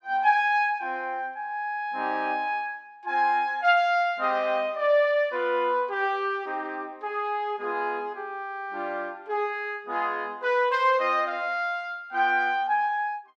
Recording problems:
none

